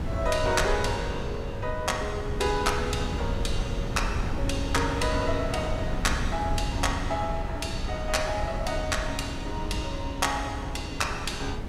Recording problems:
wind noise; below 170 Hz, SNR 3 dB

